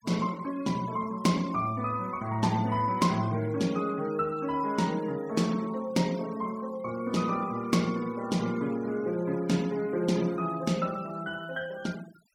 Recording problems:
noise reduction artefacts; signal-to-artefact ratio 20 dB

